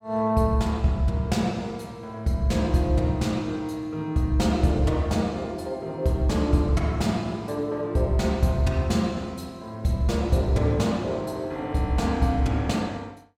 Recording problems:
none

